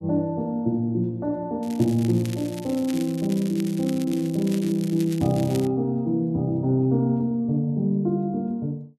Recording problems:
crackling; from 1.5 to 5.5 s; loose cable, SNR 18 dB

